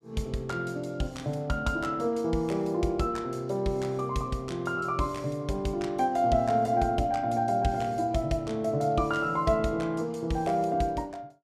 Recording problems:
none

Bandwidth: 14.5 kHz